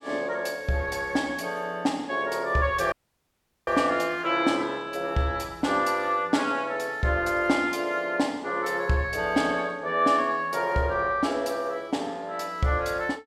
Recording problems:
dropout; at 3 s for 1 s

